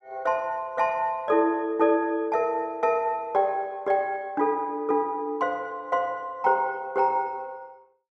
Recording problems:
none

